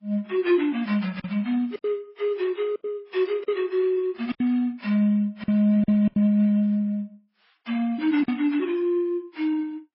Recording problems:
lossy compression; MP3, then AAC, log-spectral distance 2 dB, nothing above 4.8 kHz
packet loss; 6% of the sound replaced, filled with silence

